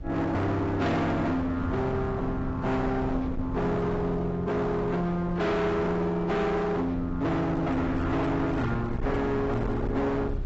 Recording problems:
codec artefacts; AAC, log-spectral distance 2 dB, nothing above 7.6 kHz
distortion; hard clipping, signal-to-distortion ratio 6 dB
low-frequency rumble; below 250 Hz, SNR 10 dB

